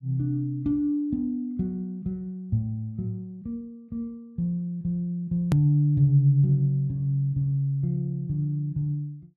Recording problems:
edit click; at 5.5 s

